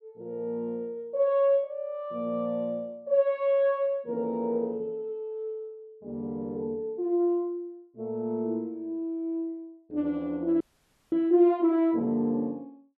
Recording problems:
audio freezing; at 11 s for 0.5 s

